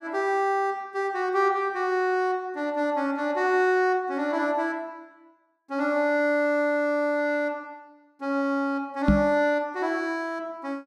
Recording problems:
microphone thump; at 9 s; peak +8 dB vs average level

